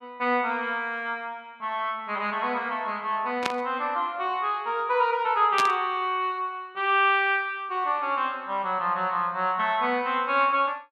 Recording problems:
static burst; at 3.5 s and at 5.5 s; peak +2 dB vs average level

